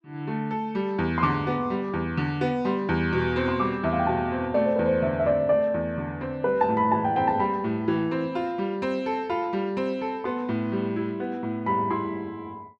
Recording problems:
none

